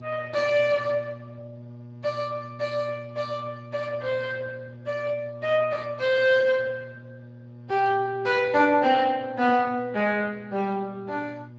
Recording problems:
codec artefacts; Speex, log-spectral distance 3 dB
hum; 60 Hz, harmonics up to 840 Hz, SNR 18 dB

